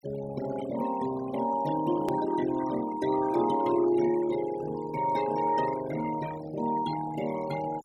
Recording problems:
denoising artefacts; signal-to-artefact ratio 13 dB
hard cut with a click; at 2 s

